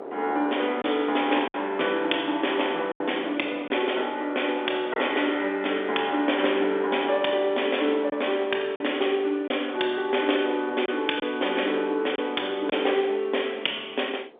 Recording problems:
phone line; 300 Hz to 3.6 kHz, G.711
wind on the microphone; below 700 Hz, SNR 19 dB
lost packets; 3% of the sound replaced, filled with silence

